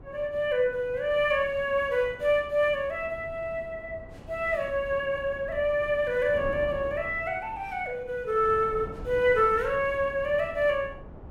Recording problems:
wind noise; below 390 Hz, SNR 17 dB

